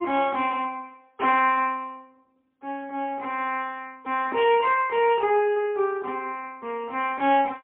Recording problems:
phone line; 240 Hz to 3.4 kHz, AMR-NB, then MP3

